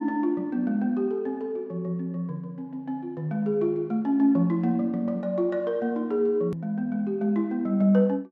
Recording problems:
edit click; at 6.5 s

